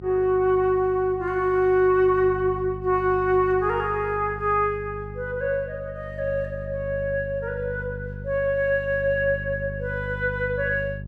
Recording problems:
mains hum; 50 Hz, harmonics up to 450 Hz, SNR 13 dB

